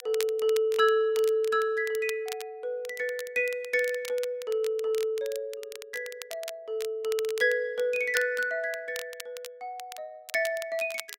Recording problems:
crackle; vinyl, SNR 15 dB

